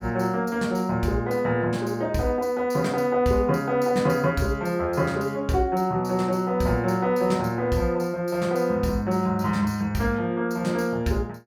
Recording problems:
none

